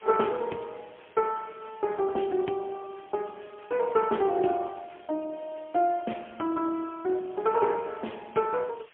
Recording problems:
telephone audio; 190 Hz to 3.2 kHz, AMR-NB, then MP3
background hiss; SNR 27 dB

